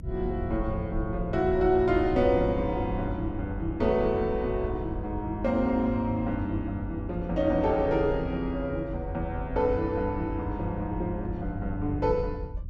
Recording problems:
low-frequency rumble; below 78 Hz, SNR 9 dB

